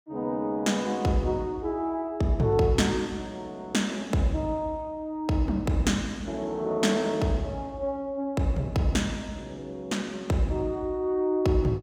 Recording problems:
none

